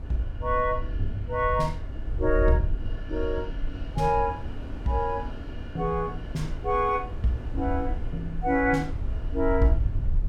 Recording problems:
low-frequency rumble; below 70 Hz, SNR 6 dB
wind noise; below 390 Hz, SNR 17 dB

